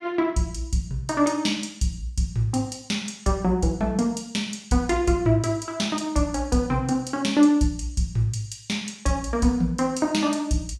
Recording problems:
none

